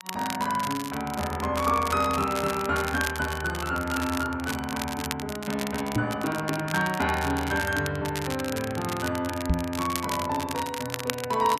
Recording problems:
crackling; vinyl, SNR 8 dB
microphone thump; at 6 s and at 9.5 s; peak +7 dB vs average level

